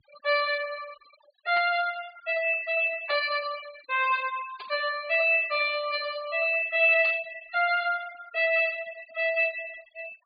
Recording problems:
treble cut off; nothing above 4.8 kHz
denoising artefacts; signal-to-artefact ratio 19 dB
burst of static; 4 times, first at 1.5 s; peak -9 dB vs average level

